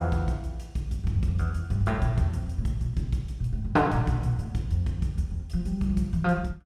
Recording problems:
none

